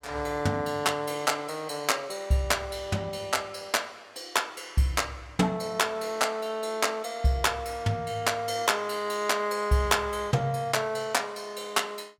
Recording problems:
none

